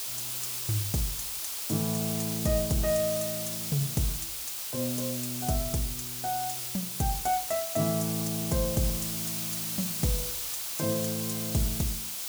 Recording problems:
background hiss; SNR 0 dB

